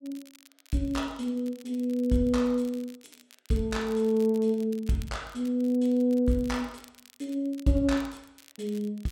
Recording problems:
crackling; vinyl, SNR 25 dB

